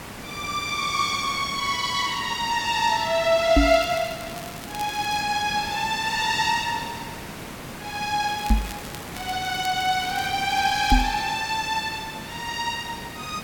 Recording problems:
background hiss; slope -4 dB per octave, SNR 12 dB
microphone thump; at 3.5 s, at 8.5 s and at 11 s; peak +8 dB vs average level
crackle; from 3.5 to 5 s and from 8.5 to 11 s; loose cable, SNR 18 dB

